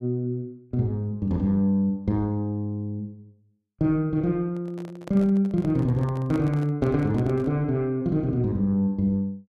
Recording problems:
handling noise; from 4.5 to 7.5 s; peak -9 dB vs average level

